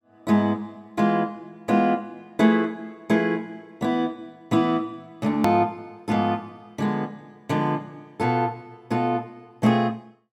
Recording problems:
hard cut with a click; at 5.5 s

